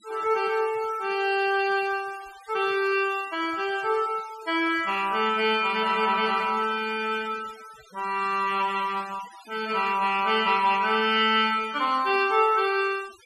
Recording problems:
denoising artefacts; signal-to-artefact ratio 21 dB

